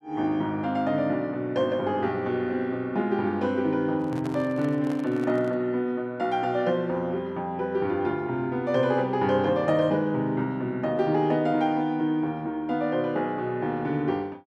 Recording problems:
handling noise; from 4 to 5.5 s; peak -9 dB vs average level

